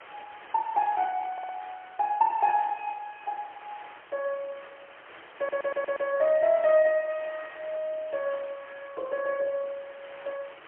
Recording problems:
phone line; 280 Hz to 3.4 kHz, AMR-NB, then MP3
hiss; SNR 19 dB
stutter; at 1.5 s and at 5.5 s

